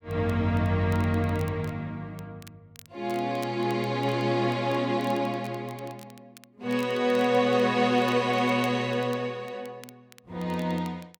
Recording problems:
crackling; vinyl, SNR 25 dB

